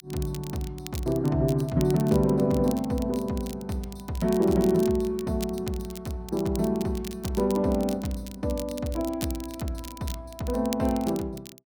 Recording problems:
crackle; vinyl, SNR 16 dB

